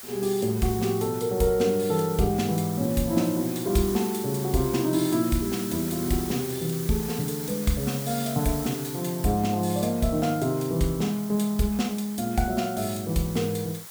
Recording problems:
background hiss; SNR 11 dB

